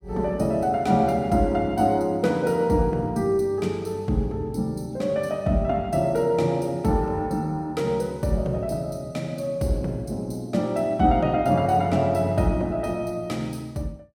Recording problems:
none

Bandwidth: 16.5 kHz